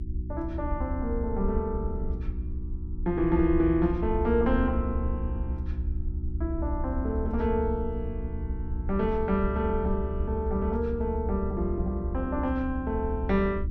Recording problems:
hum; 60 Hz, harmonics up to 360 Hz, SNR 9 dB
low-frequency rumble; below 72 Hz, SNR 5 dB

